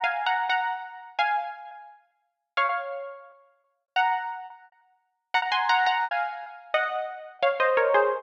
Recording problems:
lost packets; 6% of the sound replaced, filled with repeated pitch periods

